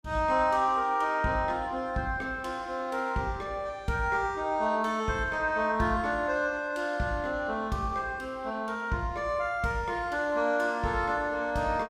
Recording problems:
none

